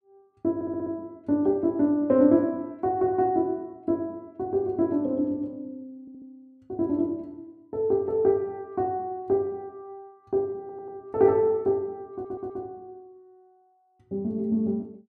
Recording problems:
audio stuttering; 4 times, first at 0.5 s

